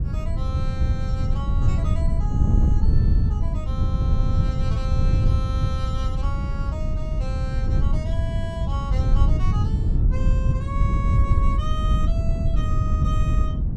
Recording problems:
wind noise; below 110 Hz, SNR -13 dB

